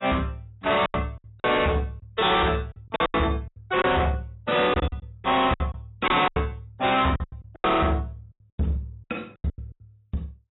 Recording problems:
codec artefacts; AAC, log-spectral distance 3 dB, nothing above 3.8 kHz
distortion; hard clipping, uneven, signal-to-distortion ratio 6 dB
lost packets; 14% of the sound replaced, filled with silence

